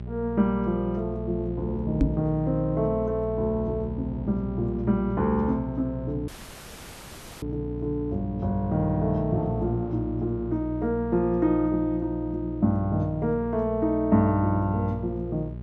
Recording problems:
hum; 60 Hz, harmonics up to 600 Hz, SNR 8 dB
microphone bump; at 2 s; peak +8 dB vs average level
dropout; at 6.5 s for 1 s

